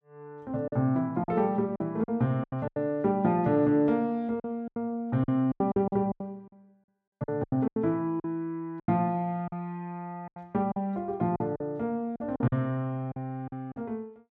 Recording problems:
packet loss; 11% of the sound replaced, filled with silence

